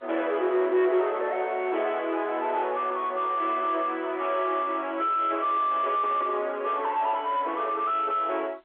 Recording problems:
phone line; 300 Hz to 3.5 kHz, G.711
distorted audio; soft clipping, signal-to-distortion ratio 8 dB

